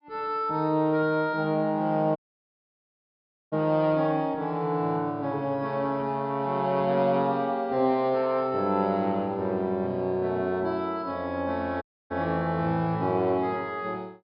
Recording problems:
treble missing; nothing above 5.5 kHz
dropout; at 2 s for 1.5 s and at 12 s

